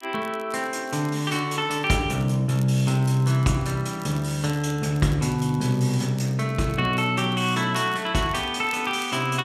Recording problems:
crackling; vinyl, SNR 24 dB

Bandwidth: 14 kHz